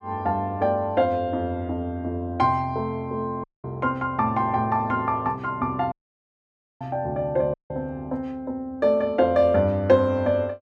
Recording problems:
dropout; at 3.5 s, at 6 s for 1 s and at 7.5 s

